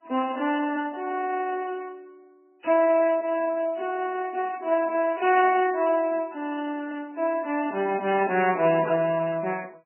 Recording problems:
lossy codec; MP3, then Vorbis, log-spectral distance 3 dB, nothing above 2.9 kHz

